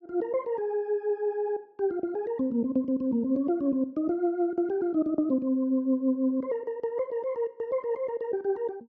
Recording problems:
none

